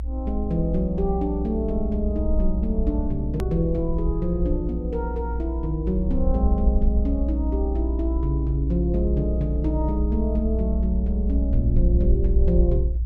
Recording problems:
rumble; below 60 Hz, strongest tone 58 Hz, SNR -1 dB
edit click; at 3.5 s

